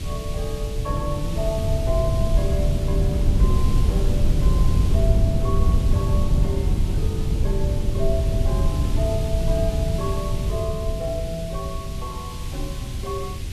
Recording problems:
hiss; SNR 9 dB
wind noise; below 110 Hz, SNR -6 dB

